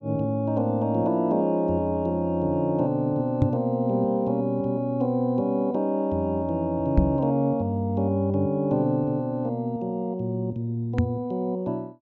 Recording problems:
treble cut off; nothing above 8 kHz
microphone thump; at 3.5 s, at 7 s and at 11 s; peak +8 dB vs average level

